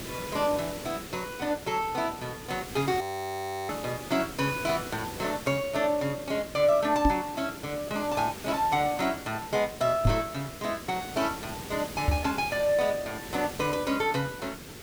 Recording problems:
hiss; SNR 11 dB
audio freezing; at 3 s for 0.5 s
microphone thump; at 7 s, at 10 s and at 12 s; peak +8 dB vs average level

